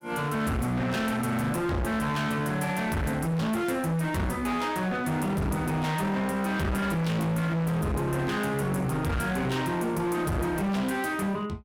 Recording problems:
distortion; hard clipping, uneven, signal-to-distortion ratio 6 dB

